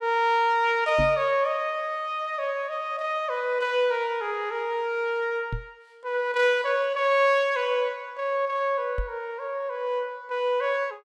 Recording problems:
microphone thump; at 1 s, at 5.5 s and at 9 s; peak -1 dB vs average level

